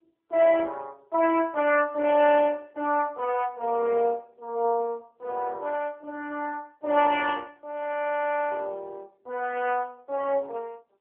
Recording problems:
telephone audio; 370 Hz to 3.2 kHz, AMR-NB

